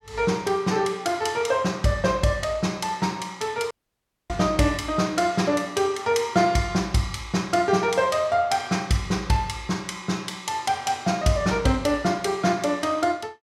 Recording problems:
audio cutting out; at 3.5 s for 0.5 s

